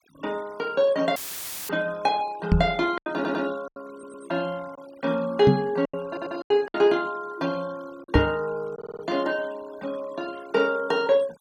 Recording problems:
noise reduction artefacts; signal-to-artefact ratio 22 dB
lost packets; 4% of the sound replaced, filled with silence
dropout; at 1 s for 0.5 s; filled with static
microphone thump; at 2.5 s, at 5.5 s and at 8 s; peak +9 dB vs average level
stutter; 4 times, first at 3 s

